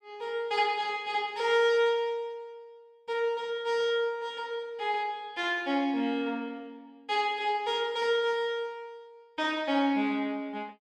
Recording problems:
none

